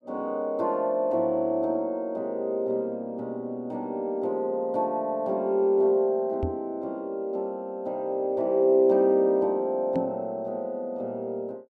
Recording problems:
microphone bump; at 6.5 s and at 10 s; peak +1 dB vs average level

